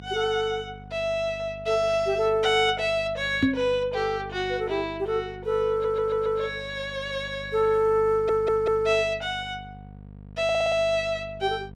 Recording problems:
electrical hum; 50 Hz, harmonics up to 750 Hz, SNR 18 dB
microphone bump; at 3.5 s; peak +7 dB vs average level
stutter; at 5.5 s, at 8 s and at 10 s

